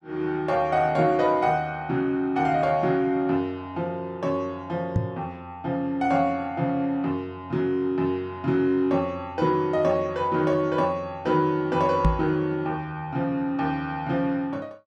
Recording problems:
microphone bump; at 5 s and at 12 s; peak +6 dB vs average level

